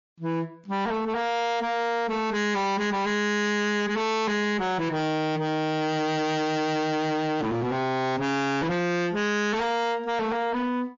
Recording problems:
lossy codec; MP3, log-spectral distance 2 dB, nothing above 6.9 kHz
distorted audio; soft clipping, signal-to-distortion ratio 6 dB
static burst; at 3.5 s; peak -14 dB vs average level

